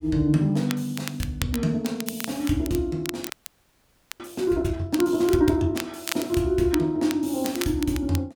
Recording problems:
crackling; vinyl, SNR 12 dB
frozen audio; at 3.5 s for 1 s

